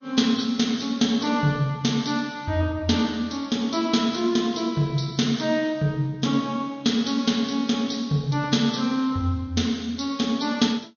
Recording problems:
low-pass filter; nothing above 6.6 kHz
lossy codec; MP3, log-spectral distance 3 dB

